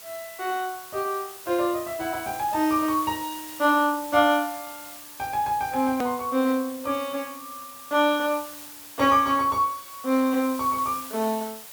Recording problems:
background hiss; SNR 14 dB
edit click; at 6 s

